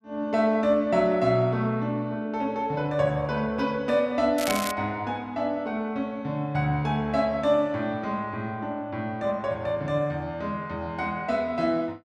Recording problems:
crackling; at 4.5 s; loose cable, SNR 7 dB

